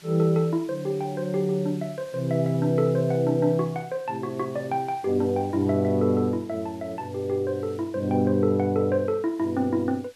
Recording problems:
background hiss; slope 0 dB per octave, SNR 26 dB

